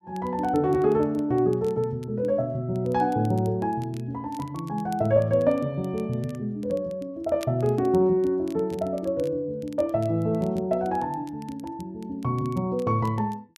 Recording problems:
crackle; vinyl, SNR 27 dB

